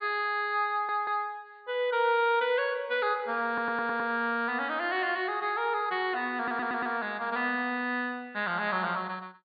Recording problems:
treble missing; nothing above 4.7 kHz
audio stuttering; at 0.5 s, at 3.5 s and at 6.5 s

